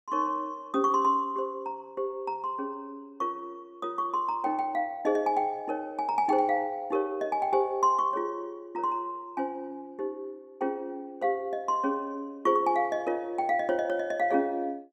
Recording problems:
none

